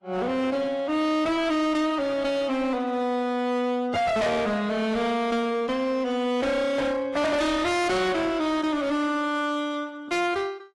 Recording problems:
lossy codec; AAC, log-spectral distance 2 dB, nothing above 11.3 kHz
distortion; hard clipping, uneven, signal-to-distortion ratio 7 dB

